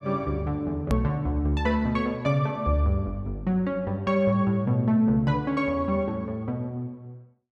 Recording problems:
click at an edit; at 1 s

